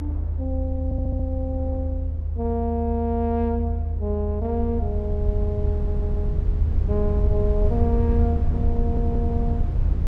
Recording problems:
rumble; below 80 Hz, SNR -3 dB
wind on the microphone; below 380 Hz, SNR 16 dB
stutter; at 1 s, at 5.5 s and at 9 s

